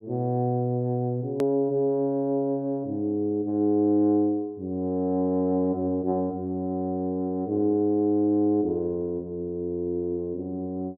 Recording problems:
edit click; at 1.5 s

